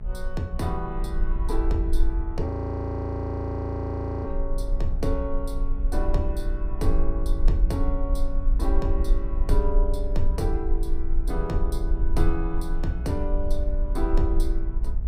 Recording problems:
hum; 60 Hz, harmonics up to 840 Hz, SNR 11 dB
rumble; below 42 Hz, strongest tone 20 Hz, SNR -2 dB
frozen audio; at 2.5 s for 2 s

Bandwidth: 15.5 kHz